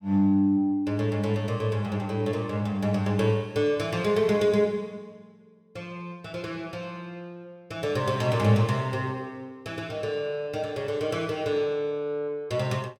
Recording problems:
none

